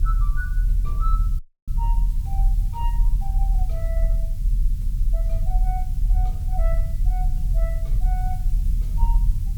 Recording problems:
hiss; slope +2 dB per octave, SNR 13 dB
rumble; below 42 Hz, strongest tone 38 Hz, SNR -13 dB
dropout; at 1.5 s

